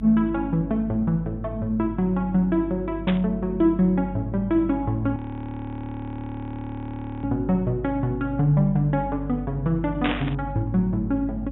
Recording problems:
low-pass filter; nothing above 3.7 kHz
hum; 50 Hz, harmonics up to 300 Hz, SNR 12 dB
static burst; at 3 s and at 10 s; peak +1 dB vs average level
audio freezing; at 5 s for 2 s

